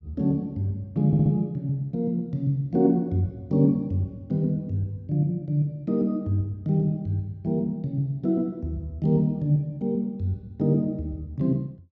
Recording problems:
audio stuttering; at 1 s

